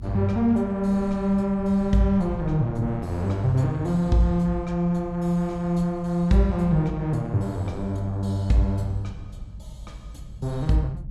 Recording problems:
rumble; below 120 Hz, SNR 16 dB

